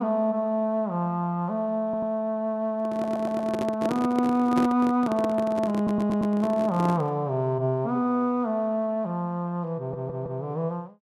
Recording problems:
stutter; 4 times, first at 2 s
microphone handling noise; from 3 to 7 s; peak +1 dB vs average level

